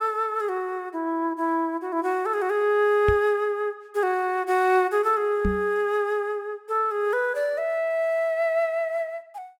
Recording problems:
knock on the microphone; at 3 s and at 5.5 s; peak +2 dB vs average level

